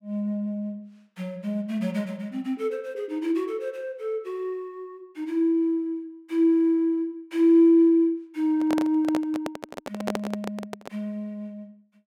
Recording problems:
handling noise; from 8.5 to 11 s; peak 0 dB vs average level

